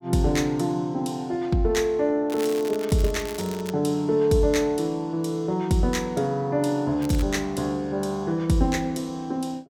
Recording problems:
crackle; from 2.5 to 3.5 s and at 7 s; loose cable, SNR 16 dB

